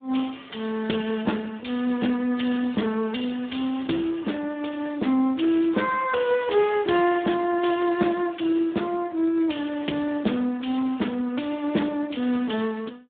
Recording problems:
telephone audio; 150 Hz to 3.6 kHz, Speex

